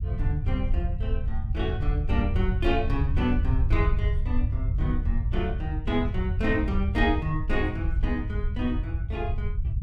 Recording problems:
rumble; below 90 Hz, SNR -2 dB

